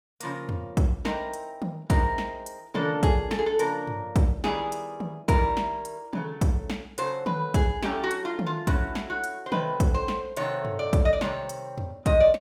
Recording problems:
none

